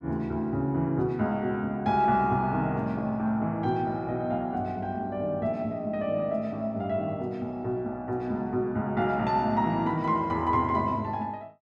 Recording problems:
none

